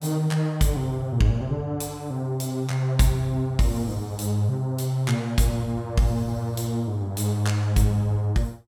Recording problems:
none

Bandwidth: 17 kHz